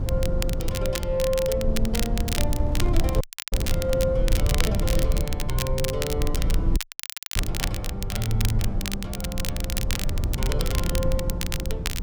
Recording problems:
rumble; below 88 Hz, SNR -2 dB
crackle; vinyl, SNR 2 dB
handling noise; from 2.5 to 4 s; peak -9 dB vs average level
dropout; at 3 s and at 7 s for 0.5 s

